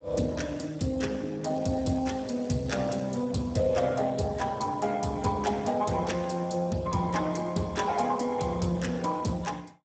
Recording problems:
lossy compression; Speex, log-spectral distance 6 dB, nothing above 7.8 kHz
crackling; from 1.5 to 3 s; loose cable, SNR 25 dB

